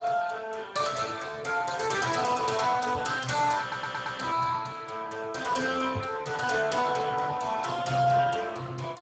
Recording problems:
codec artefacts; Speex, log-spectral distance 5 dB, nothing above 7.8 kHz
knock on the microphone; at 3 s and at 6 s; peak -4 dB vs average level
audio stuttering; at 3.5 s

